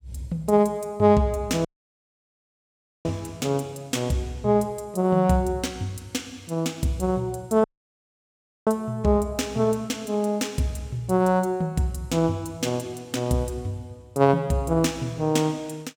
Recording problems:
dropout; at 1.5 s for 1.5 s and at 7.5 s for 1 s

